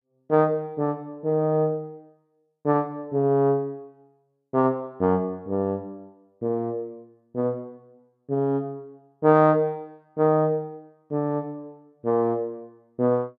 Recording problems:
none

